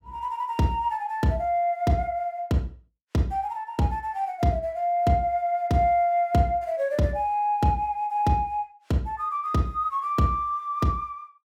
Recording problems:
none

